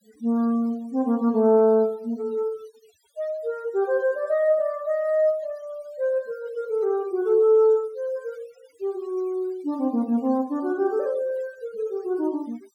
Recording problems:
noise reduction artefacts; signal-to-artefact ratio 27 dB

